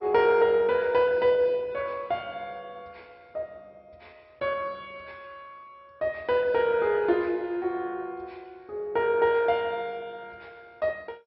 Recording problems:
lossy codec; MP2, log-spectral distance 2 dB, nothing above 4.6 kHz

